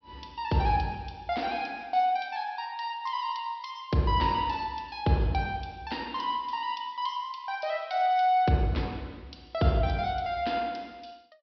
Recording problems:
treble missing; nothing above 5.5 kHz

